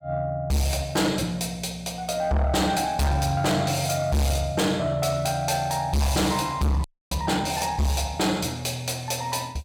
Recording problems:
distortion; soft clipping, signal-to-distortion ratio 8 dB
frozen audio; at 7 s

